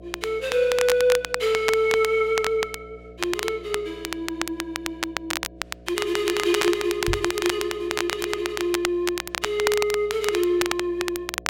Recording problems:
electrical hum; 60 Hz, harmonics up to 720 Hz, SNR 22 dB
crackling; vinyl, SNR 5 dB
knock on the microphone; at 7 s; peak 0 dB vs average level

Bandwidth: 16 kHz